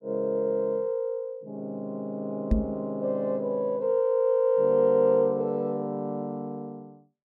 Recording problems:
knock on the microphone; at 2.5 s; peak +7 dB vs average level

